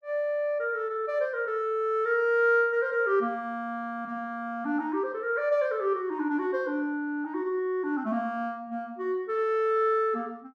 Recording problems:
none

